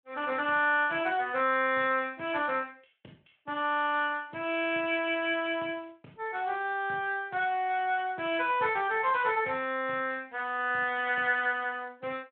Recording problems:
telephone audio; 220 Hz to 3.4 kHz, Speex

